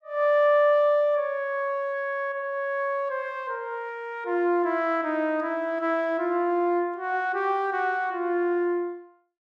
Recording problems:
none

